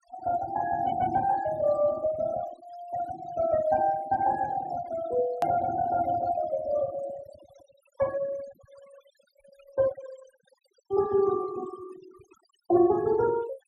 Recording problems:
denoising artefacts; signal-to-artefact ratio 17 dB
edit click; at 5.5 s

